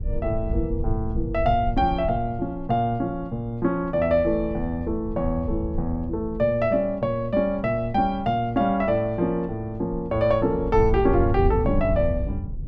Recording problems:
low-frequency rumble; below 94 Hz, SNR 8 dB

